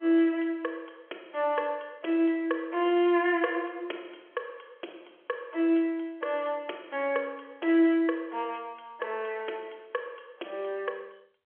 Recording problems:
phone line; 280 Hz to 3.9 kHz, G.711

